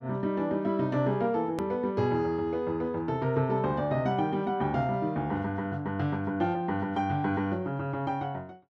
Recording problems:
hard cut with a click; at 1.5 s

